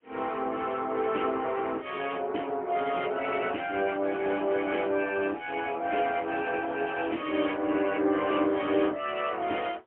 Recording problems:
phone line; 240 Hz to 3.3 kHz, AMR-NB, then MP3

